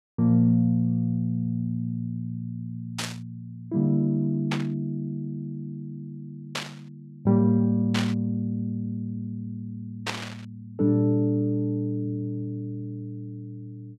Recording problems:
burst of static; 5 times, first at 3 s; peak +2 dB vs average level

